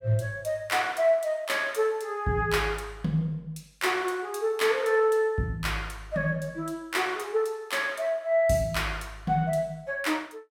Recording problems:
none

